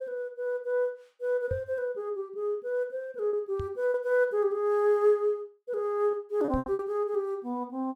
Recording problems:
packet loss; 4% of the sound replaced, filled with repeated pitch periods
microphone bump; at 1.5 s, at 3.5 s and at 6.5 s; peak -2 dB vs average level

